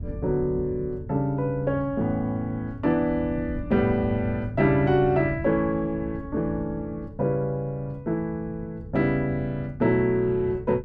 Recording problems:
wind on the microphone; below 150 Hz, SNR 13 dB

